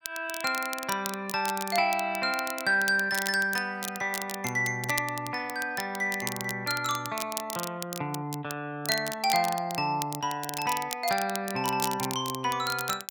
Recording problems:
crackling; vinyl, SNR 8 dB

